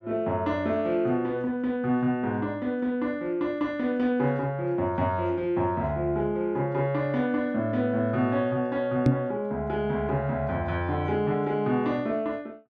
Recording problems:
knock on the microphone; at 9 s; peak +8 dB vs average level

